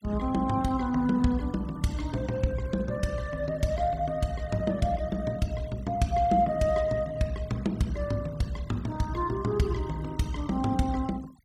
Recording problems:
noise reduction artefacts; signal-to-artefact ratio 23 dB

